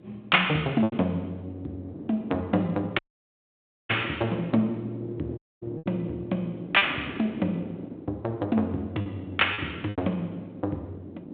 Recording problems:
telephone audio; 240 Hz to 3.6 kHz, G.726
wind noise; below 390 Hz, SNR 13 dB
lost packets; 4% of the sound replaced, filled with repeated pitch periods
dropout; at 3 s for 1 s and at 5.5 s

